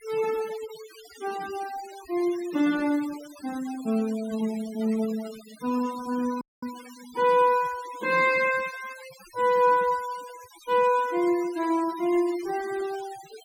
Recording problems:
noise reduction artefacts; signal-to-artefact ratio 18 dB
dropout; at 6.5 s

